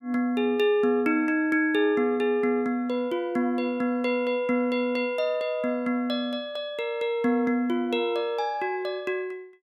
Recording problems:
none

